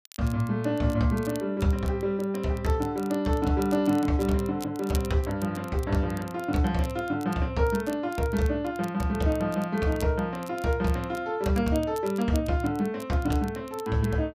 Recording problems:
crackling; vinyl, SNR 21 dB

